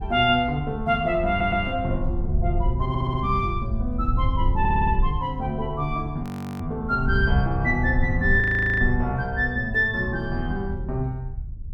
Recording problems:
wind on the microphone; below 86 Hz, SNR 5 dB
stutter; at 1.5 s, at 3 s and at 4.5 s
audio freezing; at 6 s and at 8.5 s

